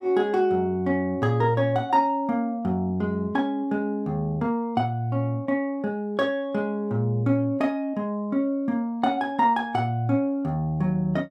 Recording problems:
none

